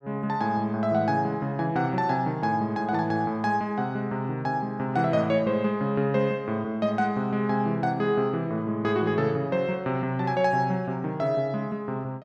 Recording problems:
none

